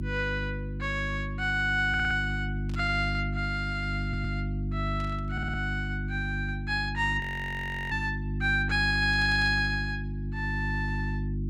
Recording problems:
hum; 50 Hz, harmonics up to 350 Hz, SNR 4 dB
stutter; 4 times, first at 2 s
burst of static; at 2.5 s, at 5 s and at 9 s; peak -13 dB vs average level
audio freezing; at 7 s for 0.5 s

